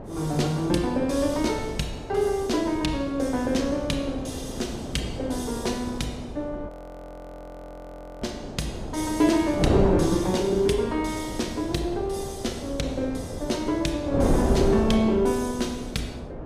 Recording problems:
wind on the microphone; below 480 Hz, SNR 5 dB
frozen audio; at 6.5 s for 1.5 s

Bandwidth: 15 kHz